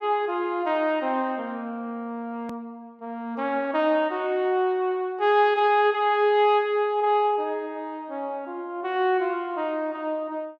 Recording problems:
edit click; at 2.5 s

